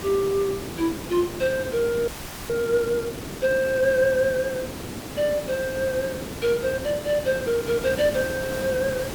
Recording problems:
hiss; slope -5 dB per octave, SNR 9 dB
frozen audio; at 2 s

